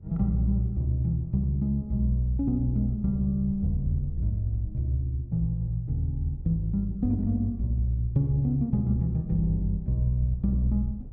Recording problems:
wind noise; below 90 Hz, SNR 18 dB

